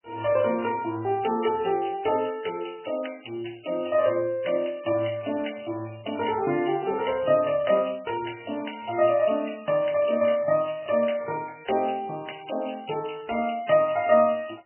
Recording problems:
lossy codec; MP3, log-spectral distance 10 dB, nothing above 2.9 kHz

